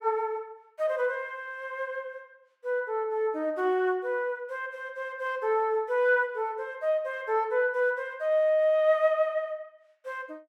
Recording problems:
none

